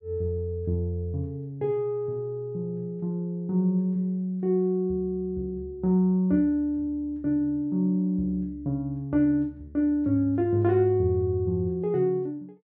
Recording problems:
none

